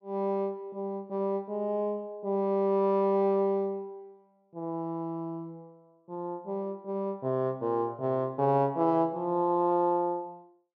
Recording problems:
none

